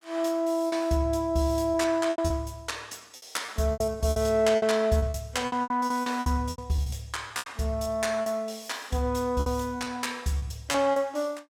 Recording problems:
lost packets; 13% of the sound replaced, filled with repeated pitch periods

